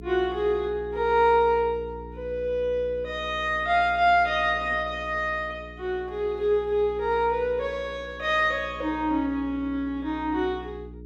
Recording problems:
electrical hum; 60 Hz, harmonics up to 420 Hz, SNR 17 dB

